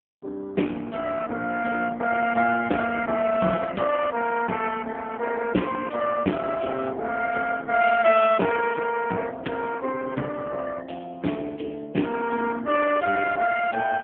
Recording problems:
phone line; 190 Hz to 3.3 kHz, AMR-NB

